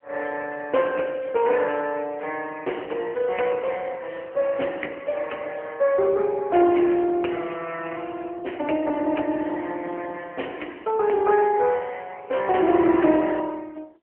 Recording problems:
phone line; 260 Hz to 3.1 kHz, AMR-NB

